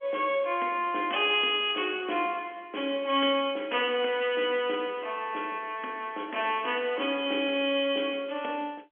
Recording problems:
telephone audio; 240 Hz to 3.4 kHz, G.711

